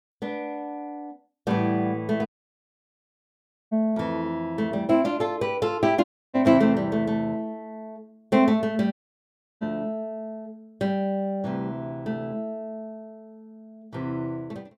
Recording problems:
audio cutting out; at 2.5 s for 1.5 s, at 6 s and at 9 s for 0.5 s

